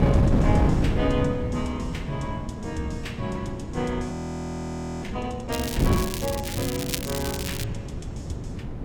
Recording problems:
wind on the microphone; below 250 Hz, SNR -1 dB
frozen audio; at 4 s for 1 s
crackling; from 5.5 to 7.5 s; loose cable, SNR 3 dB

